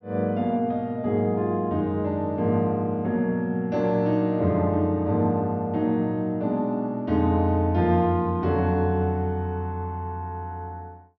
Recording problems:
low-pass filter; nothing above 6.2 kHz

